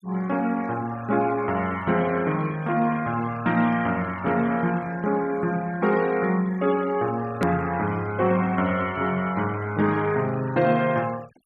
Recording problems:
noise reduction artefacts; signal-to-artefact ratio 20 dB
click at an edit; at 7.5 s

